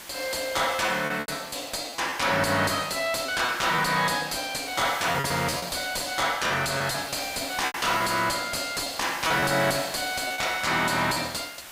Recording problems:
distortion; soft clipping, signal-to-distortion ratio 6 dB
background hiss; slope 0 dB per octave, SNR 14 dB
lost packets; 7% of the sound replaced, filled with repeated pitch periods

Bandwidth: 15.5 kHz